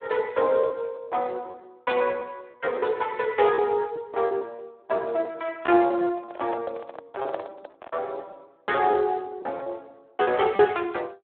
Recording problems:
telephone audio; 320 Hz to 3.7 kHz, Speex
lost packets; 8% of the sound replaced, filled with repeated pitch periods
microphone handling noise; from 6 to 8 s; peak -4 dB vs average level

